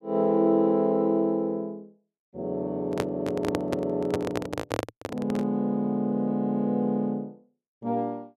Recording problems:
microphone handling noise; from 3 to 5.5 s; peak +3 dB vs average level

